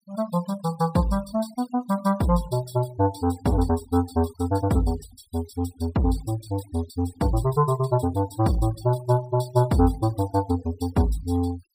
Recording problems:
noise reduction artefacts; signal-to-artefact ratio 20 dB

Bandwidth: 15.5 kHz